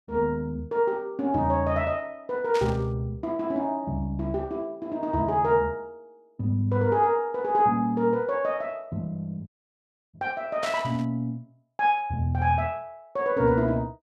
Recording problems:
static burst; at 2.5 s and at 11 s; peak -4 dB vs average level
audio cutting out; at 9.5 s for 0.5 s

